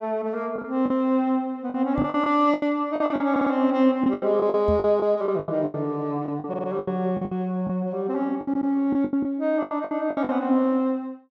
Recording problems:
lost packets; 14% of the sound replaced, filled with the last packet
microphone bump; at 2 s and at 4.5 s; peak 0 dB vs average level
stutter; at 3.5 s, at 6.5 s and at 8.5 s

